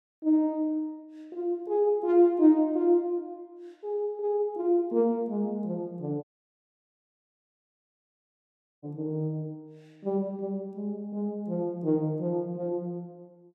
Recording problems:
audio cutting out; at 6 s for 2.5 s

